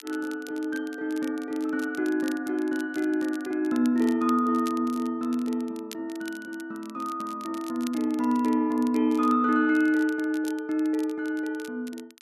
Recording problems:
crackle; vinyl, SNR 21 dB

